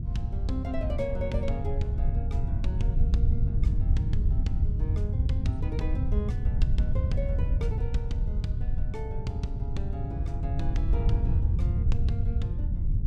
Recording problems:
wind noise; below 94 Hz, SNR -8 dB

